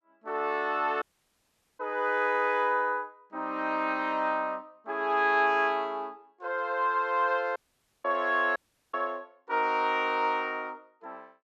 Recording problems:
audio cutting out; at 1 s for 1 s, at 7.5 s and at 8.5 s

